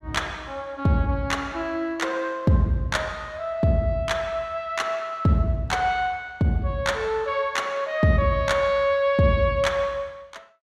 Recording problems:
none

